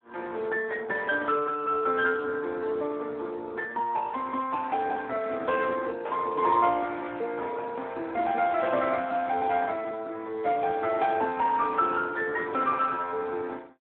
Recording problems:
phone line; 260 Hz to 3.5 kHz, Speex

